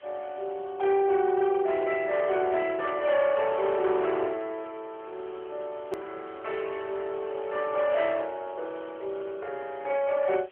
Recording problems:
phone line; 340 Hz to 3.3 kHz, AMR-NB
distortion; hard clipping, uneven, signal-to-distortion ratio 13 dB
hiss; SNR 27 dB
click at an edit; at 6 s

